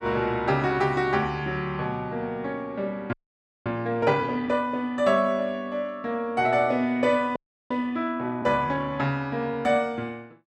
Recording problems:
frozen audio; at 3 s for 0.5 s and at 7.5 s

